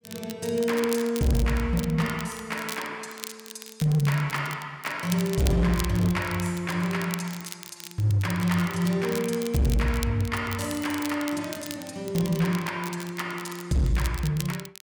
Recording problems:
distortion; hard clipping, signal-to-distortion ratio 12 dB
crackling; vinyl, SNR 13 dB

